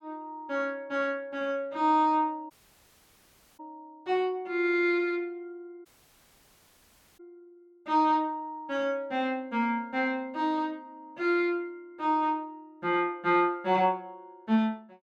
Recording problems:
audio cutting out; at 2.5 s for 1 s and at 6 s for 1.5 s

